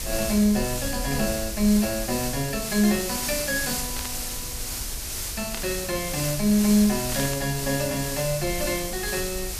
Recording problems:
background hiss; SNR 4 dB
low-frequency rumble; below 72 Hz, SNR 14 dB
static burst; at 4 s, at 5.5 s and at 7 s; peak -6 dB vs average level

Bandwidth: 14.5 kHz